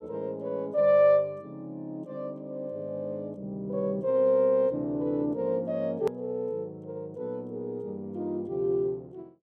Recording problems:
click at an edit; at 6 s

